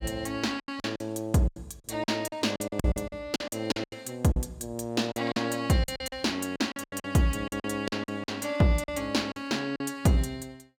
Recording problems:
packet loss; 14% of the sound replaced, filled with silence

